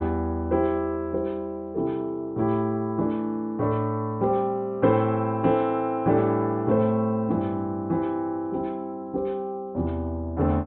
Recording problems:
treble cut off; nothing above 4 kHz

